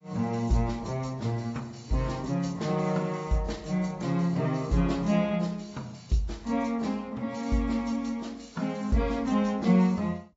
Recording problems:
lossy compression; AAC, log-spectral distance 3 dB, nothing above 7.6 kHz

